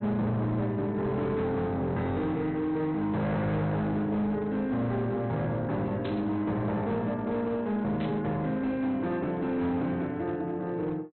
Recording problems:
treble cut off; nothing above 4.1 kHz
distorted audio; hard clipping, signal-to-distortion ratio 10 dB
burst of static; at 6 s and at 8 s; peak -9 dB vs average level

